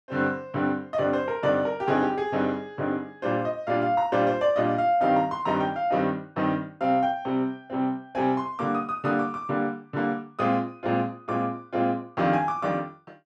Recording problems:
none

